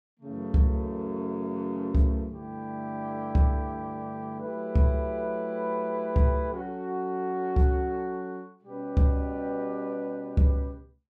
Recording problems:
none

